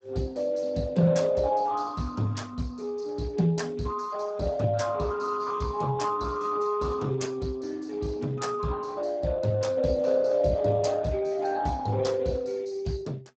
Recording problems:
codec artefacts; Speex, log-spectral distance 4 dB, nothing above 7.6 kHz

